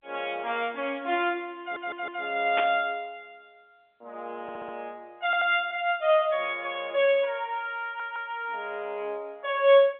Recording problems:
telephone audio; 190 Hz to 3.7 kHz, G.711
audio stuttering; 4 times, first at 1.5 s
static burst; at 2.5 s; peak +1 dB vs average level

